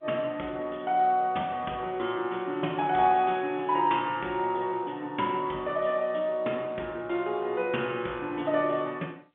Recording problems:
phone line; 220 Hz to 3.5 kHz, G.711

